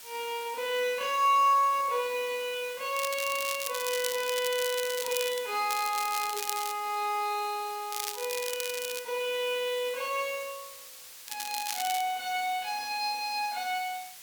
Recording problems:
hiss; slope +3 dB per octave, SNR 14 dB
crackling; 4 times, first at 3 s; loose cable, SNR 6 dB

